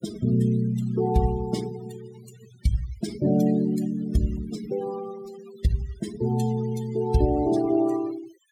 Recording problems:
noise reduction artefacts; signal-to-artefact ratio 16 dB

